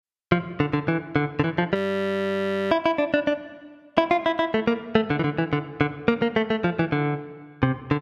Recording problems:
frozen audio; at 2 s for 1 s

